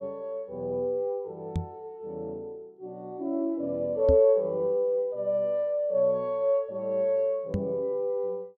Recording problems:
microphone thump; at 1.5 s, at 4 s and at 7.5 s; peak +3 dB vs average level

